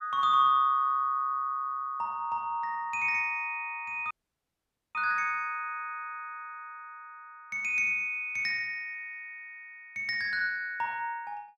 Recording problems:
dropout; at 4 s for 1 s

